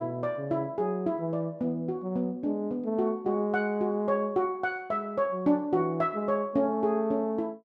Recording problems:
none

